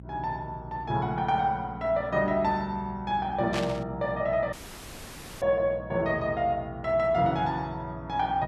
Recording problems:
electrical hum; 60 Hz, harmonics up to 540 Hz, SNR 16 dB
static burst; at 3.5 s; peak -2 dB vs average level
dropout; at 4.5 s for 1 s

